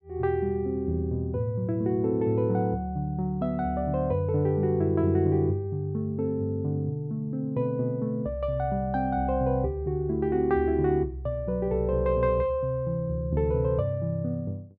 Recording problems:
none

